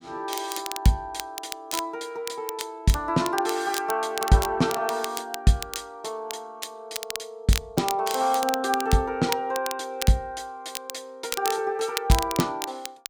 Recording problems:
crackling; vinyl, SNR 8 dB

